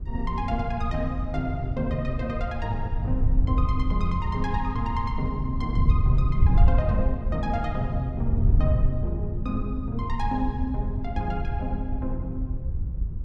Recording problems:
wind noise; below 88 Hz, SNR -2 dB

